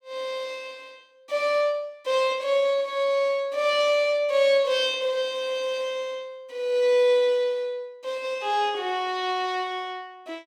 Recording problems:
none

